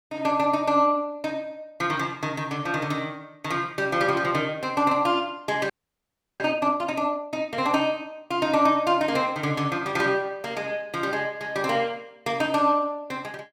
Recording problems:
audio freezing; at 5.5 s for 0.5 s

